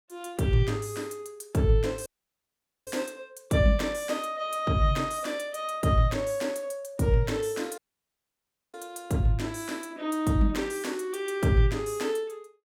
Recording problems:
audio cutting out; at 2 s for 1 s and at 8 s for 1 s

